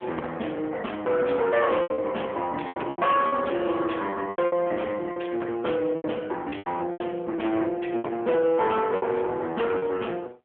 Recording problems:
telephone audio; 260 Hz to 3.4 kHz, AMR-NB
distorted audio; hard clipping, uneven, signal-to-distortion ratio 11 dB
lost packets; 10% of the sound replaced, filled with repeated pitch periods

